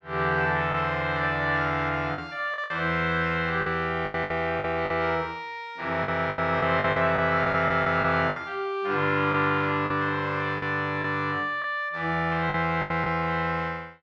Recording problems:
lost packets; 8% of the sound replaced, filled with the last packet

